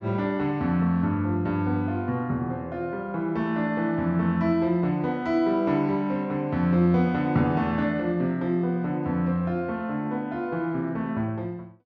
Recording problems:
treble cut off; nothing above 8 kHz

